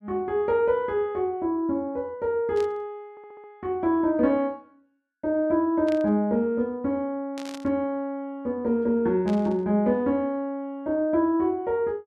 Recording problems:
burst of static; 4 times, first at 2.5 s; peak -11 dB vs average level
audio stuttering; at 3 s

